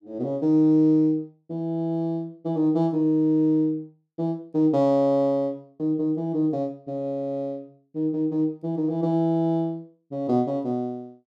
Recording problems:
none

